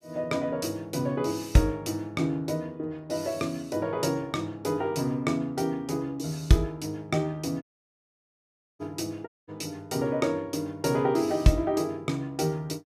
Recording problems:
audio cutting out; at 7.5 s for 1 s and at 9.5 s

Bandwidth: 14.5 kHz